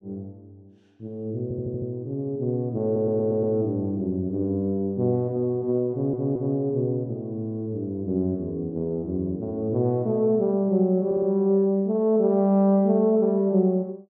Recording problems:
audio stuttering; 4 times, first at 1.5 s

